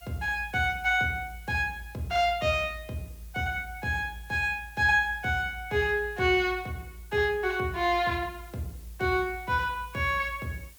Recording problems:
hiss; slope 0 dB per octave, SNR 26 dB

